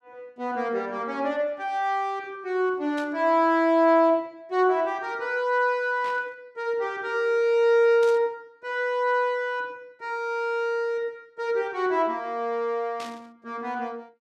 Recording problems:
burst of static; 4 times, first at 3 s; peak -11 dB vs average level

